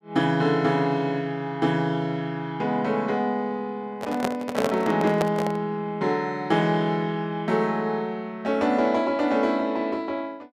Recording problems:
microphone handling noise; from 4 to 5.5 s; peak +3 dB vs average level

